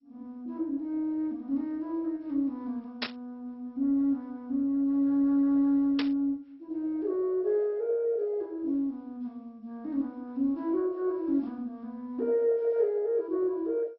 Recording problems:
lossy compression; MP2, log-spectral distance 2 dB
static burst; at 3 s and at 6 s; peak +2 dB vs average level

